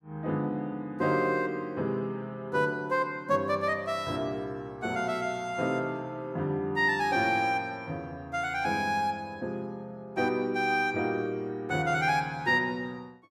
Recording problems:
none

